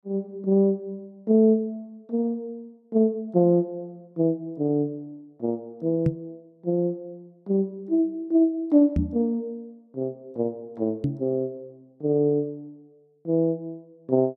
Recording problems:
microphone thump; at 6 s, at 9 s and at 11 s; peak +4 dB vs average level

